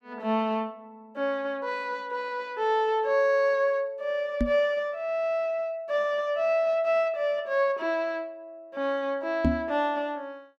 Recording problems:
microphone bump; at 4.5 s and at 9.5 s; peak +6 dB vs average level

